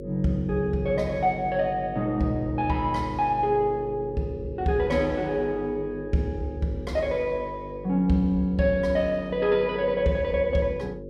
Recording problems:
hum; 50 Hz, harmonics up to 550 Hz, SNR 12 dB

